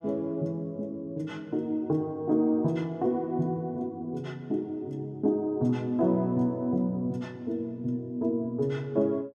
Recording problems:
none

